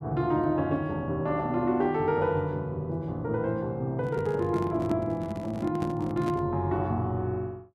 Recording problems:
microphone handling noise; from 4 to 6.5 s; peak -1 dB vs average level

